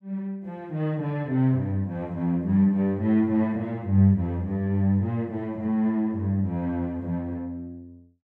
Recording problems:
none

